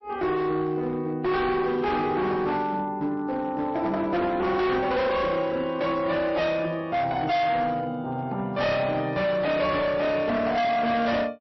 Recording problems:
codec artefacts; MP3, log-spectral distance 2 dB, nothing above 5.7 kHz
distorted audio; hard clipping, signal-to-distortion ratio 8 dB

